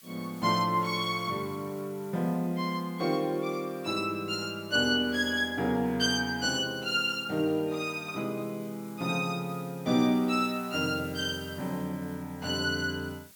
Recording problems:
background hiss; SNR 22 dB

